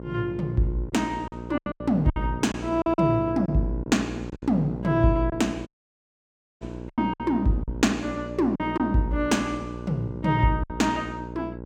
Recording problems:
hum; 60 Hz, harmonics up to 1 kHz, SNR 11 dB
lost packets; 7% of the sound replaced, filled with silence
audio cutting out; at 5.5 s for 1 s

